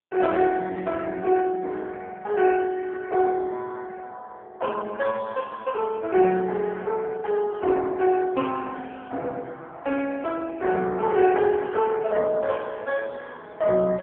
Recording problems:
phone line; 240 Hz to 2.6 kHz, AMR-NB

